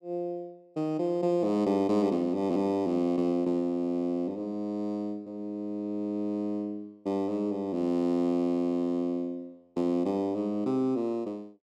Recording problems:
none

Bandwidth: 13.5 kHz